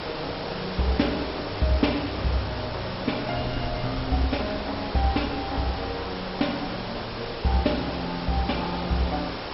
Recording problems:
codec artefacts; MP2, log-spectral distance 13 dB, nothing above 5.5 kHz
hiss; slope -4 dB per octave, SNR 5 dB
wind on the microphone; below 150 Hz, SNR 16 dB

